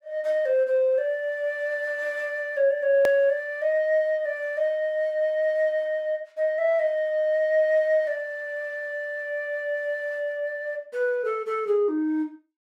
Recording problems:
hard cut with a click; at 3 s

